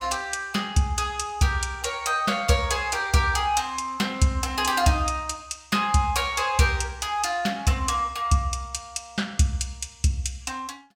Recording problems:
none

